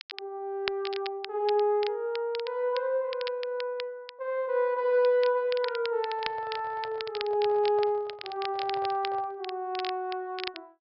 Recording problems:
low-pass filter; nothing above 5.3 kHz
crackling; vinyl, SNR 12 dB
microphone handling noise; from 6 to 9.5 s; peak -11 dB vs average level

